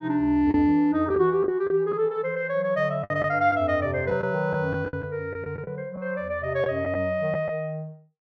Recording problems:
packet loss; 6% of the sound replaced, filled with the last packet

